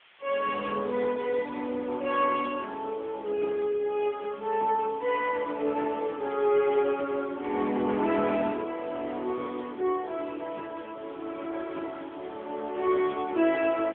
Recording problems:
telephone audio; 220 Hz to 3.4 kHz, AMR-NB
background hiss; SNR 26 dB

